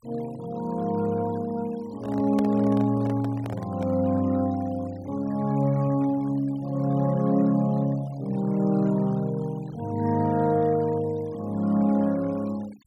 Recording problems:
denoising artefacts; signal-to-artefact ratio 24 dB
handling noise; from 2 to 4 s; peak -6 dB vs average level

